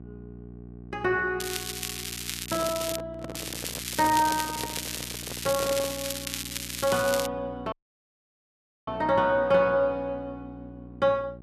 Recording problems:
hum; 60 Hz, harmonics up to 780 Hz, SNR 17 dB
crackling; from 1.5 to 3 s and from 3.5 to 7.5 s; loose cable, SNR 6 dB
handling noise; from 2.5 to 6 s; peak -5 dB vs average level
audio cutting out; at 7.5 s for 1 s

